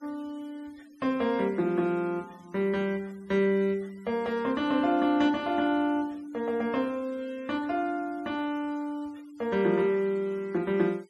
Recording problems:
noise reduction artefacts; signal-to-artefact ratio 28 dB

